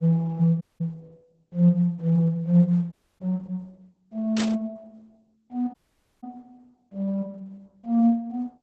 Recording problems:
lossy compression; Opus, then Opus, log-spectral distance 2 dB
dropout; at 0.5 s, at 3 s and at 5.5 s
burst of static; at 4.5 s; peak -3 dB vs average level

